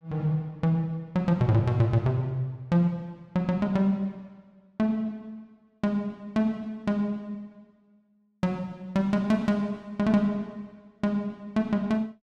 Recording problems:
none

